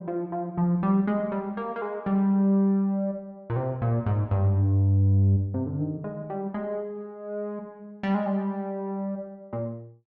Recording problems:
none

